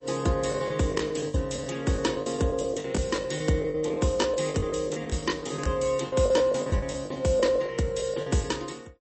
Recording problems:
lossy compression; MP3, log-spectral distance 5 dB, nothing above 8 kHz
packet loss; 16% of the sound replaced, filled with the last packet

